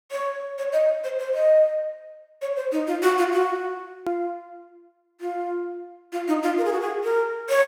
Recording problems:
click at an edit; at 4 s

